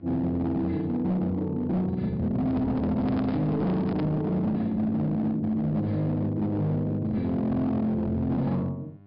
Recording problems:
treble cut off; nothing above 5.5 kHz
distortion; hard clipping, signal-to-distortion ratio 11 dB
electrical hum; 50 Hz, harmonics up to 800 Hz, SNR 25 dB
microphone handling noise; from 2.5 to 4 s; peak -7 dB vs average level

